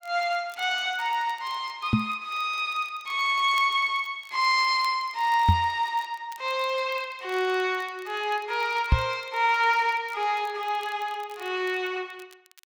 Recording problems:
crackling; vinyl, SNR 27 dB
microphone bump; at 2 s, at 5.5 s and at 9 s; peak +8 dB vs average level

